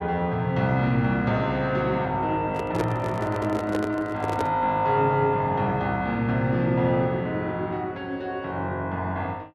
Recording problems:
handling noise; from 2.5 to 4.5 s; peak +1 dB vs average level

